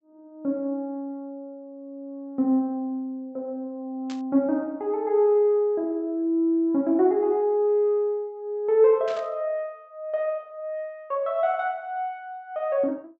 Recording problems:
treble missing; nothing above 8 kHz
static burst; at 4 s and at 9 s; peak -12 dB vs average level

